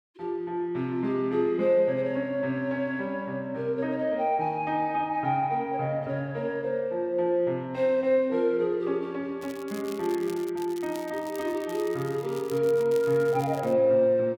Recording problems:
crackling; from 9.5 to 14 s; loose cable, SNR 20 dB

